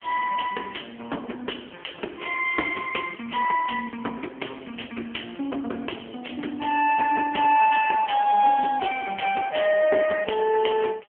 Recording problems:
telephone audio; 240 Hz to 3.3 kHz, AMR-NB

